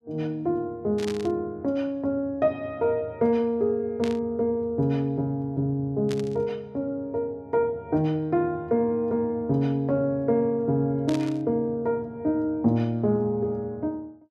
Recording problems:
static burst; 4 times, first at 1 s; peak -7 dB vs average level

